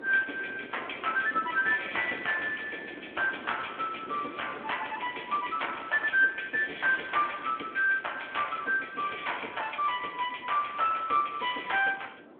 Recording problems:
phone line; 240 Hz to 3.4 kHz, Speex
wind noise; below 620 Hz, SNR 18 dB

